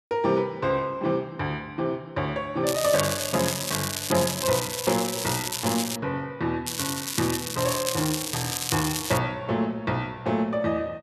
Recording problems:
crackling; from 2.5 to 6 s and from 6.5 to 9 s; loose cable, SNR 2 dB

